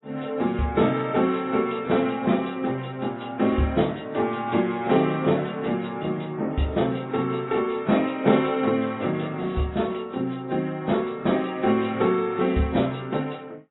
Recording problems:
lossy compression; AAC, log-spectral distance 4 dB, nothing above 3.9 kHz

